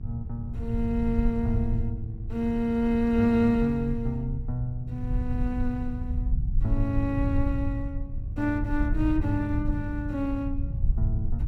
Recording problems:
electrical hum; 50 Hz, harmonics up to 800 Hz, SNR 23 dB
low-frequency rumble; below 86 Hz, SNR 4 dB

